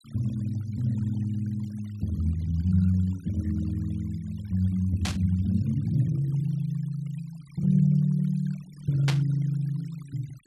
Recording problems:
noise reduction artefacts; signal-to-artefact ratio 28 dB
static burst; at 5 s and at 9 s; peak +2 dB vs average level

